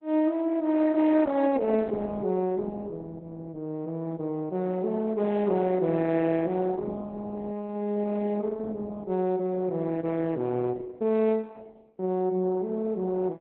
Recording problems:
lossy compression; Opus, log-spectral distance 2 dB, nothing above 4 kHz

